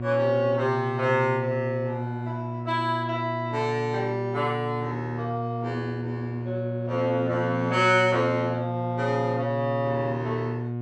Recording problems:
electrical hum; 60 Hz, harmonics up to 1.1 kHz, SNR 5 dB

